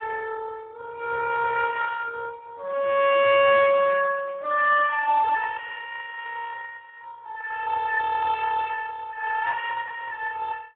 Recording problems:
phone line; 950 Hz to 2.3 kHz, Speex

